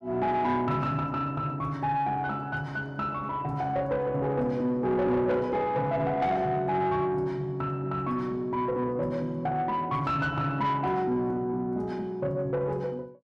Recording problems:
distorted audio; soft clipping, signal-to-distortion ratio 12 dB

